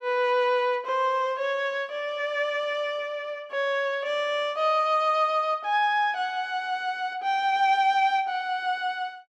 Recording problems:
none

